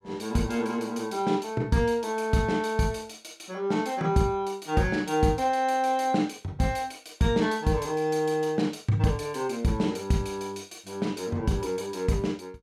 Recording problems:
none

